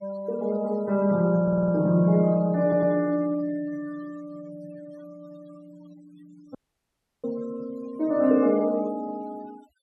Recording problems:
noise reduction artefacts; signal-to-artefact ratio 25 dB
stutter; at 1.5 s and at 2.5 s
dropout; at 6.5 s for 0.5 s

